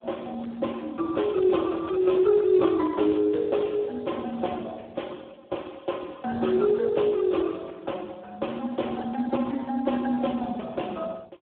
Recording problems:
phone line; 260 Hz to 2.1 kHz, Speex

